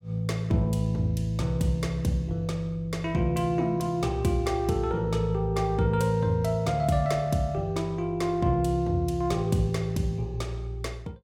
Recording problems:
none

